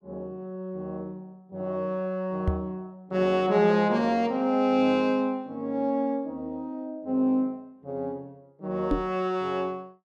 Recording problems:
knock on the microphone; at 2.5 s and at 9 s; peak +5 dB vs average level

